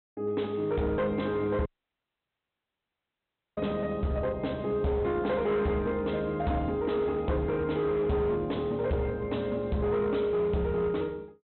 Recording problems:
treble cut off; nothing above 4 kHz
distorted audio; hard clipping, signal-to-distortion ratio 11 dB
audio cutting out; at 1.5 s for 2 s

